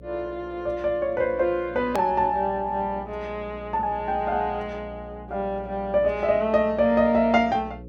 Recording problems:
electrical hum; 60 Hz, harmonics up to 540 Hz, SNR 18 dB
hard cut with a click; at 2 s

